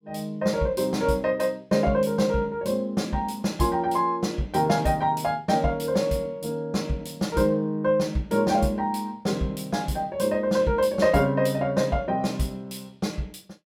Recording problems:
none

